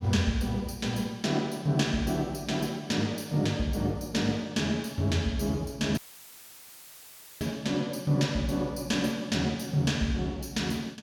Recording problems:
audio cutting out; at 6 s for 1.5 s; filled with static

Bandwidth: 18.5 kHz